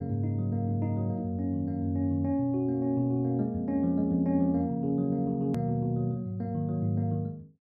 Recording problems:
edit click; at 5.5 s

